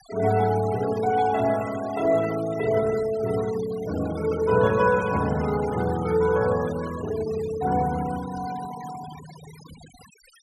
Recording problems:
noise reduction artefacts; signal-to-artefact ratio 17 dB

